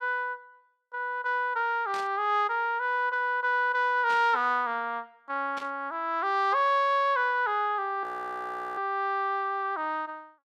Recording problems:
burst of static; at 2 s, at 4 s and at 5.5 s; peak -10 dB vs average level
audio freezing; at 8 s for 0.5 s

